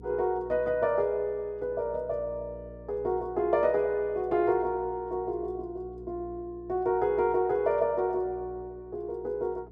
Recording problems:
hum; 60 Hz, harmonics up to 480 Hz, SNR 20 dB

